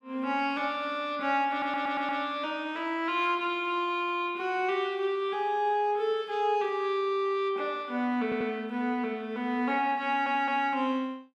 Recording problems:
stutter; at 1.5 s, at 8 s and at 10 s

